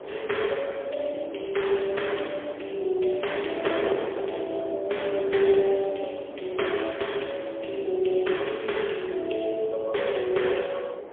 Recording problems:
telephone audio; 320 Hz to 3.4 kHz, AMR-NB, then MP3
wind noise; below 660 Hz, SNR 10 dB

